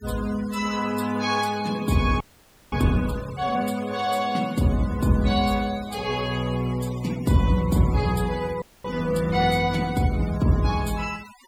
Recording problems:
noise reduction artefacts; signal-to-artefact ratio 19 dB
frozen audio; at 2 s for 0.5 s and at 8.5 s

